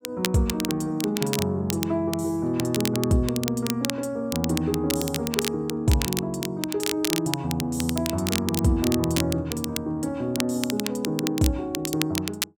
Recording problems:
crackle; vinyl, SNR 6 dB

